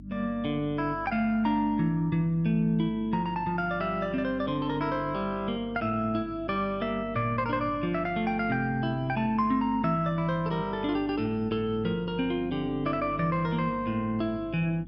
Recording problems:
electrical hum; 50 Hz, harmonics up to 300 Hz, SNR 17 dB

